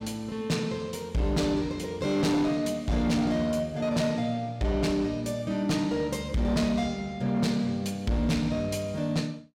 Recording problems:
distortion; hard clipping, signal-to-distortion ratio 11 dB

